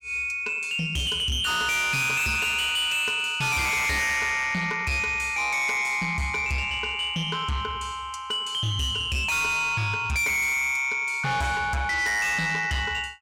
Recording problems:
distortion; soft clipping, signal-to-distortion ratio 7 dB

